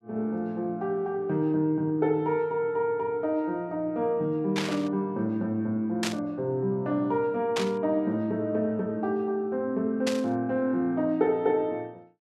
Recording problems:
burst of static; 4 times, first at 4.5 s; peak +1 dB vs average level

